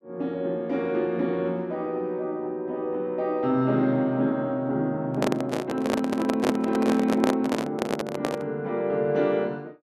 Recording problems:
microphone handling noise; from 5 to 8.5 s; peak +5 dB vs average level

